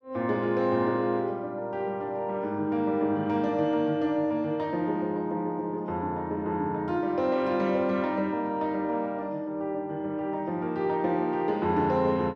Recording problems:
none

